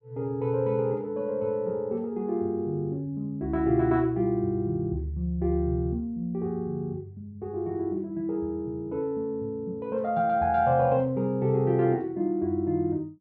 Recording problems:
none

